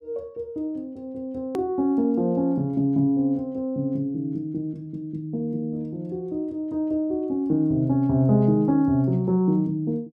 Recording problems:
click at an edit; at 1.5 s

